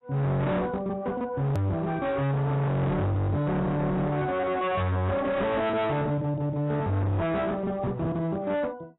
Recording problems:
lossy compression; AAC, log-spectral distance 2 dB, nothing above 13.1 kHz
distortion; hard clipping, signal-to-distortion ratio 6 dB
hard cut with a click; at 1.5 s

